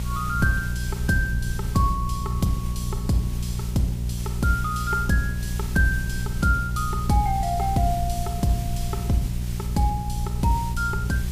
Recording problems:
hum; 60 Hz, harmonics up to 420 Hz, SNR 3 dB
background hiss; slope +1 dB per octave, SNR 15 dB
rumble; below 88 Hz, SNR 9 dB

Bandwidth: 15 kHz